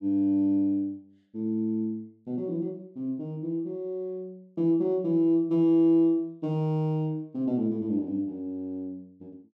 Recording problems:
none

